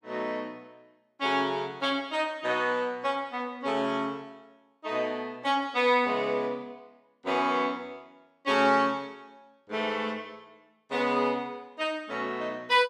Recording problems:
none

